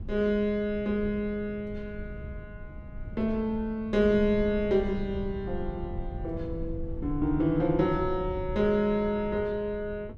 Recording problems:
rumble; below 110 Hz, SNR 12 dB

